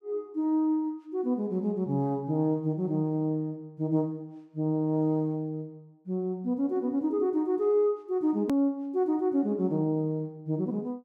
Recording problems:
click at an edit; at 8.5 s

